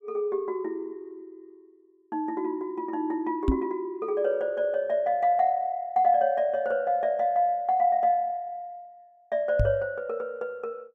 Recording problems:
microphone thump; at 3.5 s and at 9.5 s; peak +6 dB vs average level

